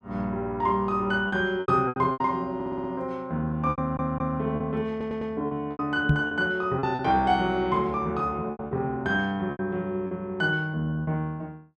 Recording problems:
lost packets; 9% of the sound replaced, filled with repeated pitch periods
stutter; at 2.5 s, at 4 s and at 5 s
knock on the microphone; at 6 s; peak +8 dB vs average level

